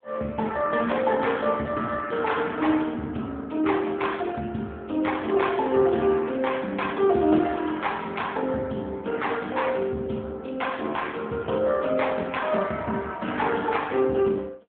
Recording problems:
phone line; 110 Hz to 3.5 kHz, AMR-NB

